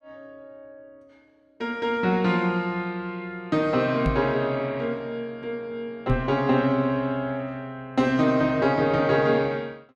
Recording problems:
knock on the microphone; at 4 s and at 6 s; peak +3 dB vs average level

